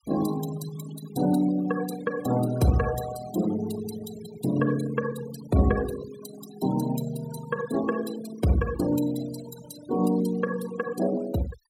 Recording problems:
noise reduction artefacts; signal-to-artefact ratio 13 dB

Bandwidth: 16 kHz